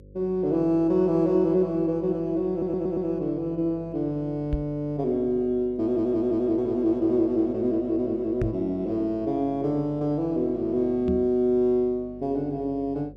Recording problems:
electrical hum; 50 Hz, harmonics up to 550 Hz, SNR 23 dB
stutter; at 2.5 s and at 6 s
knock on the microphone; at 4.5 s, at 8.5 s and at 11 s; peak 0 dB vs average level

